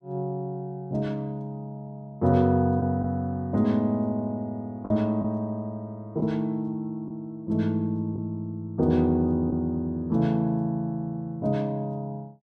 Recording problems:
lost packets; 1.5% of the sound replaced, filled with the last packet

